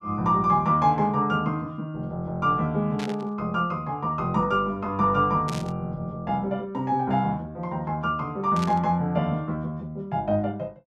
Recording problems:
burst of static; at 3 s, at 5.5 s and at 8.5 s; peak -7 dB vs average level

